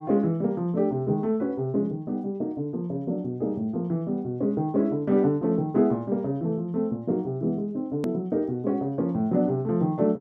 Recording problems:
edit click; at 8 s

